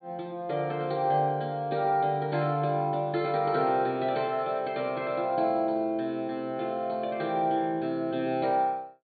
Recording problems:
treble missing; nothing above 4.5 kHz

